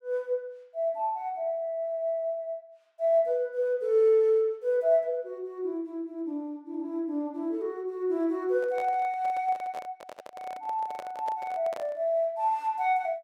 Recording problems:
handling noise; from 8.5 to 12 s; peak -7 dB vs average level

